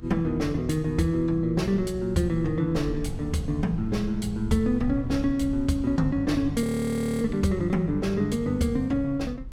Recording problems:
low-frequency rumble; below 84 Hz, SNR 14 dB
frozen audio; at 6.5 s for 0.5 s

